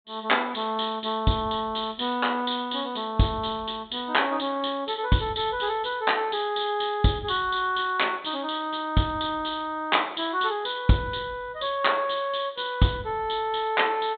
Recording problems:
low-pass filter; nothing above 4 kHz

